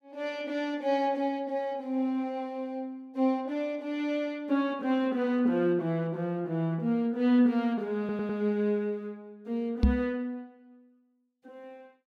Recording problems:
stutter; at 8 s
knock on the microphone; at 10 s; peak +9 dB vs average level

